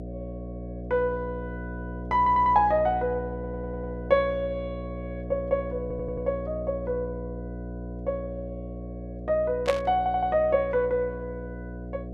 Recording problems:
mains hum; 60 Hz, harmonics up to 720 Hz, SNR 10 dB
stutter; 4 times, first at 2 s
static burst; at 9.5 s; peak 0 dB vs average level

